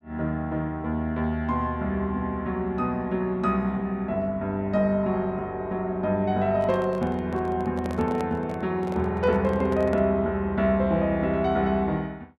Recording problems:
microphone handling noise; from 6.5 to 10 s; peak -4 dB vs average level

